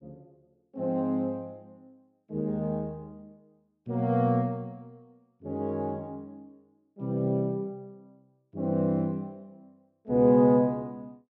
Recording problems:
none

